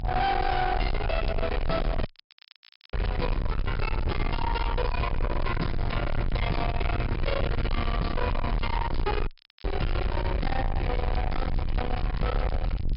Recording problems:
treble cut off; nothing above 5.5 kHz
distortion; soft clipping, signal-to-distortion ratio 6 dB
low-frequency rumble; below 230 Hz, SNR 2 dB
crackling; vinyl, SNR 26 dB
dropout; at 2 s for 1 s and at 9.5 s

